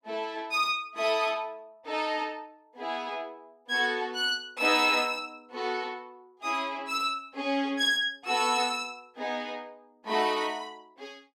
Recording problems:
none

